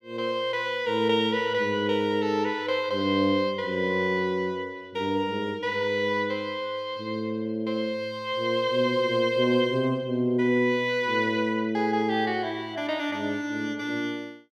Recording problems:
none

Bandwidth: 15 kHz